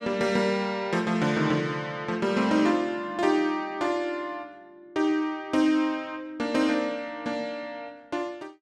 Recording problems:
none

